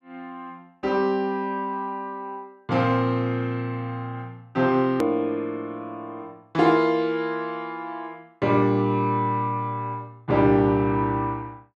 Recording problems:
edit click; at 5 s

